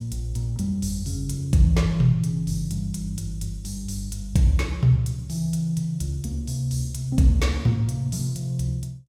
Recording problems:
none

